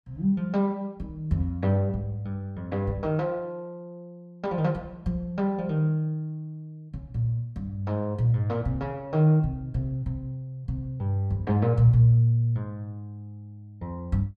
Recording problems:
none

